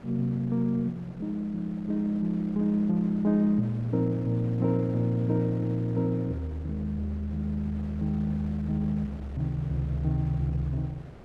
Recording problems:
wind noise; below 590 Hz, SNR 18 dB

